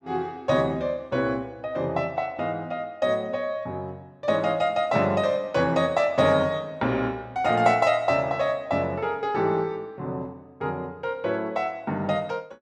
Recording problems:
none

